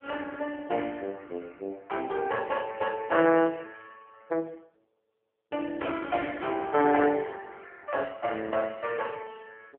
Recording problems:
telephone audio; 300 Hz to 3.4 kHz, AMR-NB

